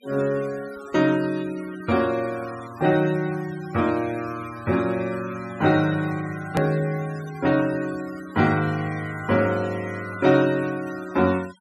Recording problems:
denoising artefacts; signal-to-artefact ratio 19 dB
hard cut with a click; at 6.5 s

